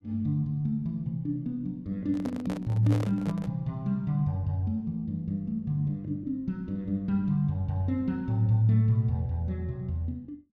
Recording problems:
microphone handling noise; from 2 to 3.5 s; peak -4 dB vs average level

